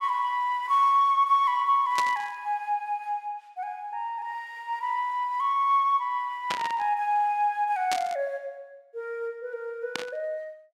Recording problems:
static burst; 4 times, first at 2 s; peak 0 dB vs average level

